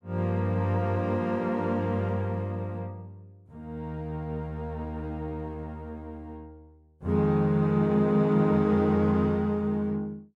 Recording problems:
none

